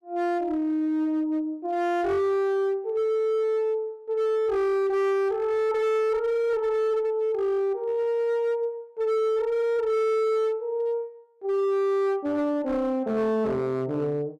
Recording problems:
distorted audio; hard clipping, signal-to-distortion ratio 10 dB

